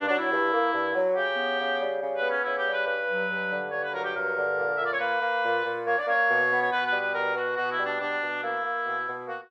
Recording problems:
none

